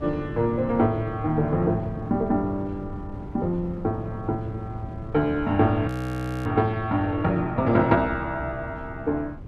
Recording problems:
wind noise; below 220 Hz, SNR 13 dB
audio freezing; at 6 s for 0.5 s

